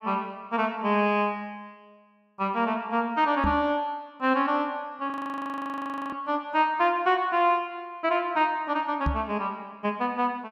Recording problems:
knock on the microphone; at 3.5 s and at 9 s; peak +2 dB vs average level
frozen audio; at 5 s for 1 s

